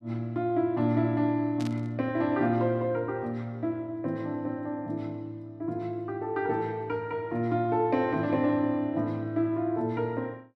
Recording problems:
burst of static; at 1.5 s; peak -9 dB vs average level

